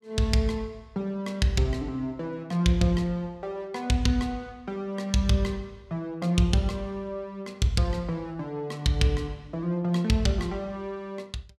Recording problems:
none

